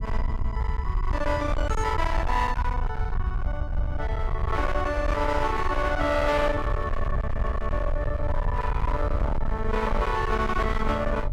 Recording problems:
distorted audio; hard clipping, uneven, signal-to-distortion ratio 7 dB
rumble; below 80 Hz, SNR 2 dB

